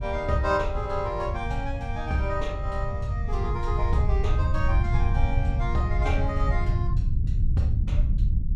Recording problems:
low-frequency rumble; below 92 Hz, SNR -3 dB

